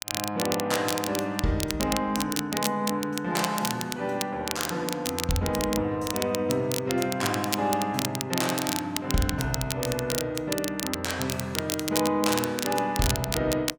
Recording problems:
crackling; vinyl, SNR 4 dB

